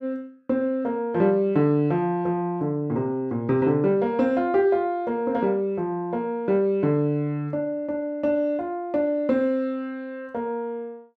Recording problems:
none

